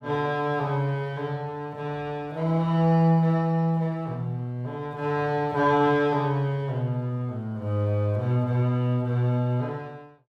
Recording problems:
none

